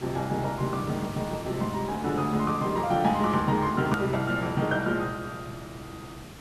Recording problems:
background hiss; slope -4 dB per octave, SNR 14 dB
click at an edit; at 4 s

